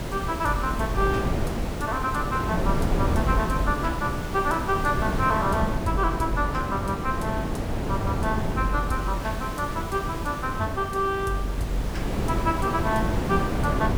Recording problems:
background hiss; slope -2 dB per octave, SNR 14 dB
wind on the microphone; below 390 Hz, SNR 2 dB

